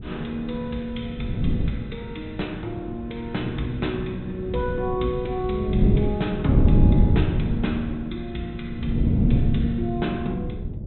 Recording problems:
low-pass filter; nothing above 3.9 kHz
wind noise; below 180 Hz, SNR -4 dB

